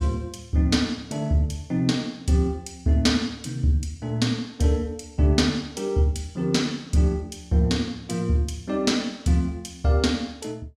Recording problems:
none

